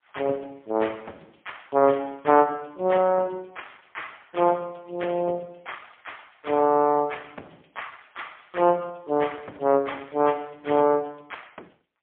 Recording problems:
telephone audio; 240 Hz to 3.4 kHz, AMR-NB, then MP3

